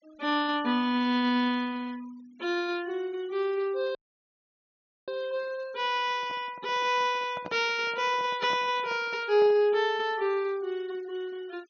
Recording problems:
treble missing; nothing above 6.7 kHz
noise reduction artefacts; signal-to-artefact ratio 25 dB
audio cutting out; at 4 s for 1 s
handling noise; from 6 to 9.5 s; peak -8 dB vs average level

